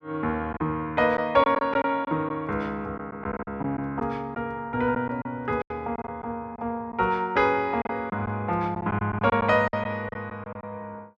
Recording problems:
packet loss; 8% of the sound replaced, filled with silence

